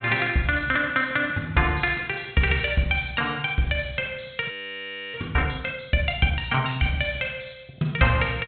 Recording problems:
low-pass filter; nothing above 4 kHz
audio freezing; at 4.5 s for 0.5 s

